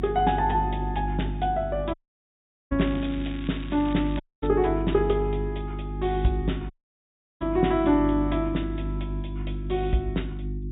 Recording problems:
treble cut off; nothing above 4 kHz
hum; 50 Hz, harmonics up to 350 Hz, SNR 6 dB
dropout; at 2 s for 1 s, at 4 s and at 6.5 s for 0.5 s
crackle; from 3 to 4.5 s; loose cable, SNR 18 dB

